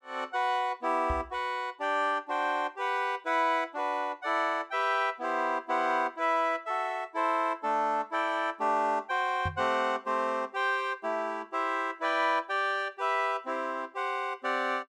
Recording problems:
microphone thump; at 1 s and at 9.5 s; peak -2 dB vs average level

